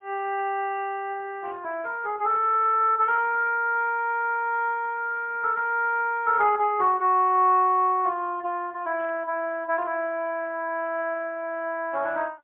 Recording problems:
telephone audio; 320 Hz to 3.3 kHz, AMR-NB, then MP3
static burst; at 3 s and at 9 s; peak -18 dB vs average level

